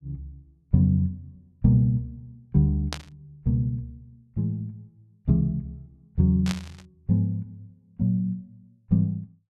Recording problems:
static burst; at 3 s and at 6.5 s; peak -2 dB vs average level

